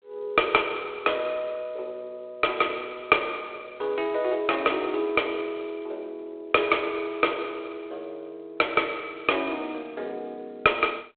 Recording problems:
phone line; 300 Hz to 3.6 kHz, G.726

